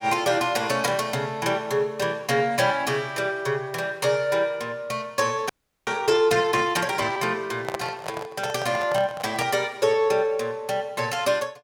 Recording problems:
frozen audio; at 5.5 s
handling noise; from 7.5 to 9.5 s; peak -1 dB vs average level

